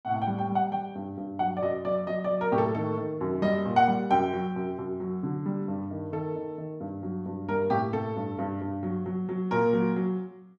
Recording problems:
none

